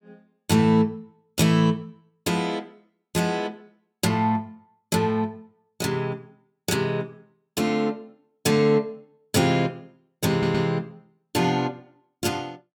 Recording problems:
audio stuttering; at 10 s

